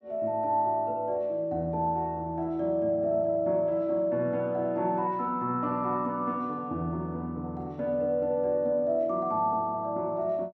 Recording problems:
none

